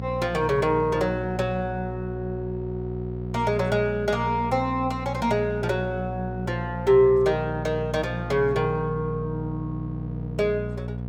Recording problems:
mains hum; 60 Hz, harmonics up to 720 Hz, SNR 7 dB

